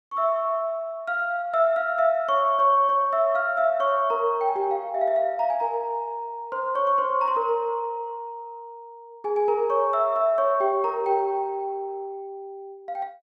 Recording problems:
none

